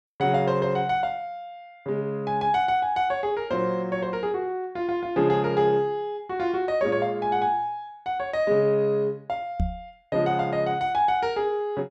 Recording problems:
knock on the microphone; at 9.5 s; peak +2 dB vs average level

